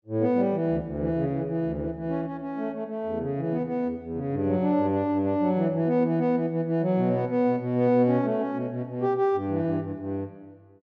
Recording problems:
none

